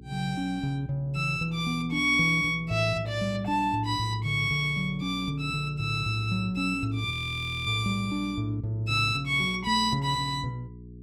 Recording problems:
mains hum; 60 Hz, harmonics up to 420 Hz, SNR 17 dB
frozen audio; at 7 s for 0.5 s

